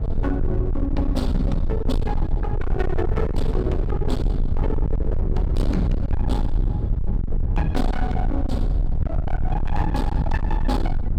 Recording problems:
distortion; hard clipping, signal-to-distortion ratio 7 dB
rumble; below 86 Hz, SNR -2 dB

